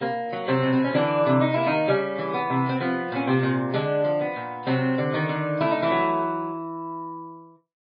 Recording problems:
lossy codec; MP3, log-spectral distance 2 dB, nothing above 4.2 kHz

